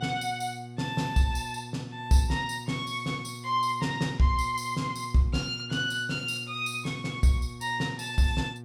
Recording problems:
hum; 60 Hz, harmonics up to 840 Hz, SNR 14 dB

